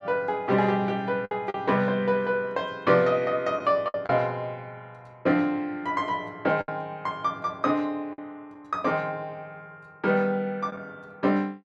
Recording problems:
packet loss; 3% of the sound replaced, filled with the last packet

